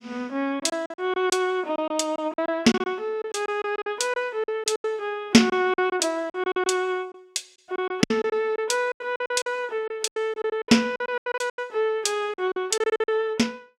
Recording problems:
packet loss; 15% of the sound replaced, filled with silence

